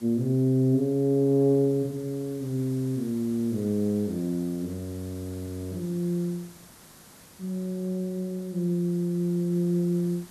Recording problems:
background hiss; SNR 22 dB

